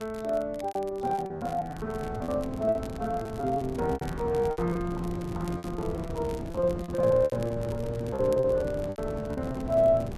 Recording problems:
wind on the microphone; below 340 Hz, SNR 9 dB
crackling; vinyl, SNR 23 dB
lost packets; 16% of the sound replaced, filled with repeated pitch periods

